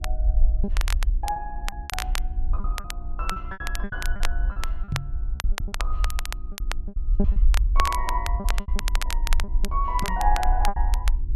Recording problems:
hum; 60 Hz, harmonics up to 360 Hz, SNR 16 dB
rumble; below 50 Hz, SNR -3 dB
crackling; vinyl, SNR 4 dB
lost packets; 11% of the sound replaced, filled with repeated pitch periods
knock on the microphone; at 5 s and at 10 s; peak +7 dB vs average level

